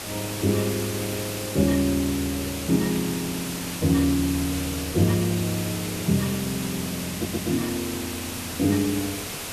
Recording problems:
background hiss; slope -2 dB per octave, SNR 6 dB
static burst; at 3 s; peak -12 dB vs average level
audio stuttering; at 7 s

